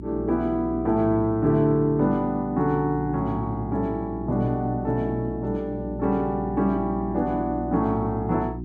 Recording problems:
hum; 60 Hz, harmonics up to 360 Hz, SNR 10 dB

